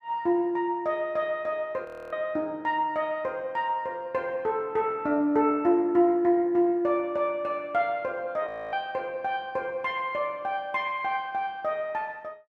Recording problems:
audio freezing; at 2 s and at 8.5 s

